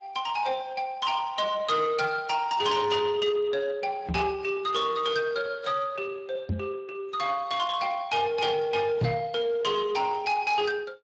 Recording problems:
lossy compression; AAC, then Speex, log-spectral distance 3 dB, nothing above 7.3 kHz
distorted audio; soft clipping, signal-to-distortion ratio 12 dB
knock on the microphone; at 4 s, at 6.5 s and at 9 s; peak +5 dB vs average level

